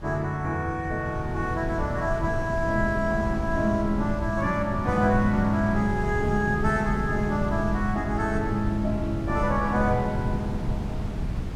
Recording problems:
wind on the microphone; below 170 Hz, SNR 6 dB

